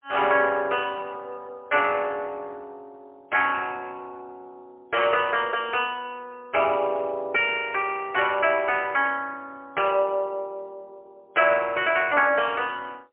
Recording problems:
telephone audio; 300 Hz to 3.1 kHz, AMR-NB, then MP3

